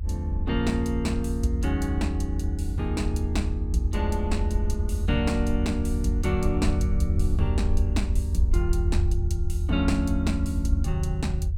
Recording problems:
low-frequency rumble; below 80 Hz, SNR -1 dB

